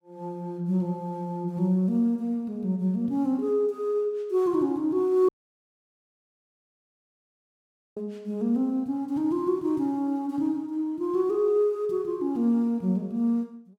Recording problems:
audio cutting out; at 5.5 s for 2.5 s

